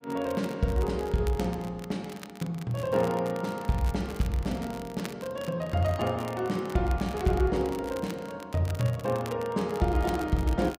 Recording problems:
crackling; vinyl, SNR 18 dB

